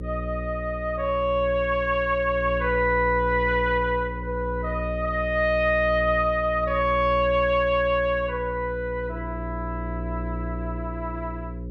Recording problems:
electrical hum; 60 Hz, harmonics up to 540 Hz, SNR 9 dB

